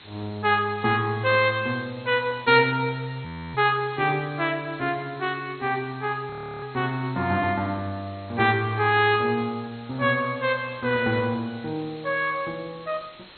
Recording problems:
lossy compression; MP2, log-spectral distance 15 dB, nothing above 4.2 kHz
background hiss; SNR 23 dB
frozen audio; at 3.5 s and at 6.5 s

